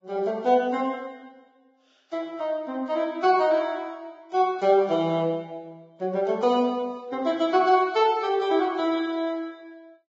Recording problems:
lossy compression; Vorbis, log-spectral distance 2 dB, nothing above 7.3 kHz

